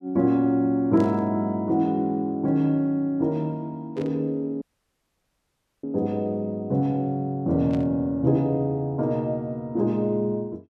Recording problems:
static burst; at 1 s, at 4 s and at 7.5 s; peak -15 dB vs average level
dropout; at 4.5 s for 1 s

